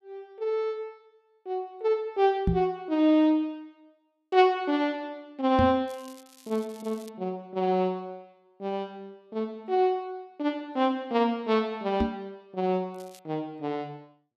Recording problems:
knock on the microphone; at 2.5 s, at 5.5 s and at 12 s; peak +7 dB vs average level
crackle; from 6 to 7 s and at 13 s; loose cable, SNR 25 dB

